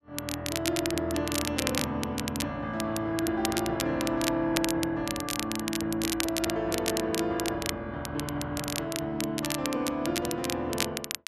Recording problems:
crackle; vinyl, SNR 4 dB

